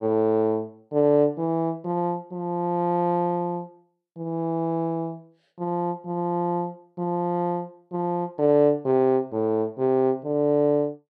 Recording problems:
none

